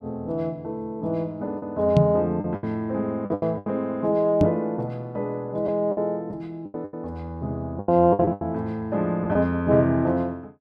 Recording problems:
lost packets; 8% of the sound replaced, filled with the last packet
knock on the microphone; at 2 s and at 4.5 s; peak +9 dB vs average level

